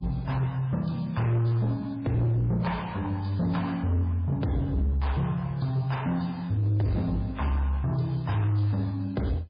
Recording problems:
codec artefacts; MP3, then MP3, log-spectral distance 2 dB, nothing above 11.3 kHz
distorted audio; soft clipping, signal-to-distortion ratio 10 dB

